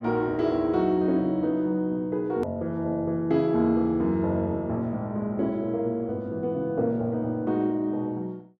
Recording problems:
edit click; at 2.5 s

